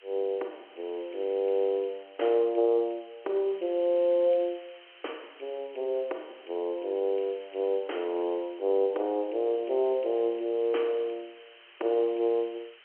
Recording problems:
telephone audio; 300 Hz to 3.2 kHz, G.711
background hiss; SNR 24 dB

